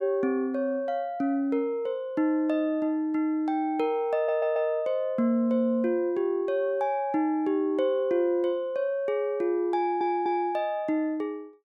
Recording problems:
audio stuttering; at 4 s and at 10 s

